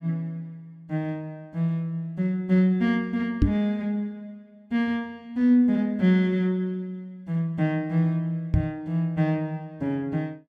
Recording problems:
microphone thump; at 3.5 s and at 8.5 s; peak +8 dB vs average level

